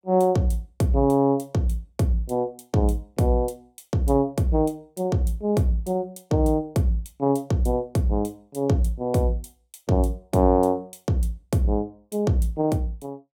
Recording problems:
none

